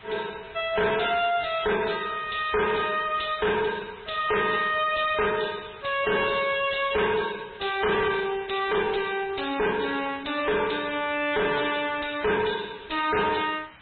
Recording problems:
treble cut off; nothing above 3.9 kHz
lossy codec; MP3, log-spectral distance 10 dB
distortion; hard clipping, uneven, signal-to-distortion ratio 5 dB
background hiss; SNR 22 dB

